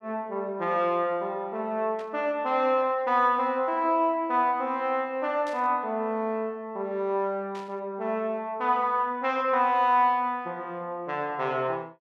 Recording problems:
burst of static; at 2 s, at 5.5 s and at 7.5 s; peak -14 dB vs average level

